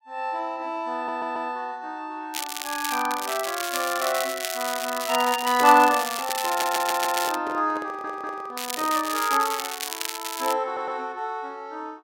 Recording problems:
stutter; 4 times, first at 1 s
crackle; from 2.5 to 7.5 s and from 8.5 to 11 s; loose cable, SNR 5 dB
microphone handling noise; from 5.5 to 9.5 s; peak -6 dB vs average level

